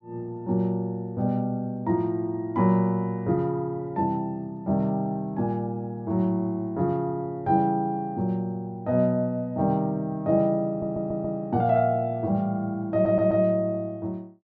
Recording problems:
audio stuttering; at 11 s and at 13 s

